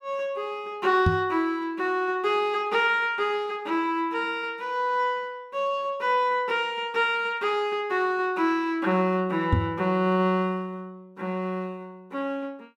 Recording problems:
knock on the microphone; at 1 s and at 9.5 s; peak +7 dB vs average level

